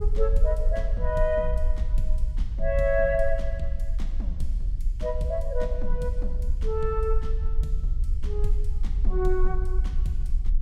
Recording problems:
low-frequency rumble; below 48 Hz, SNR -1 dB

